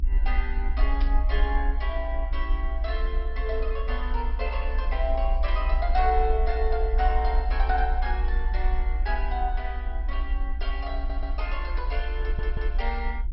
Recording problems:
lossy compression; MP2, log-spectral distance 2 dB, nothing above 5.5 kHz
low-frequency rumble; below 56 Hz, SNR -3 dB
static burst; at 1 s and at 5.5 s; peak -5 dB vs average level
audio stuttering; at 11 s and at 12 s

